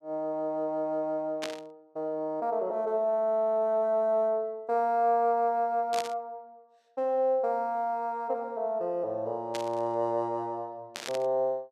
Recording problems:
burst of static; 4 times, first at 1.5 s; peak -2 dB vs average level

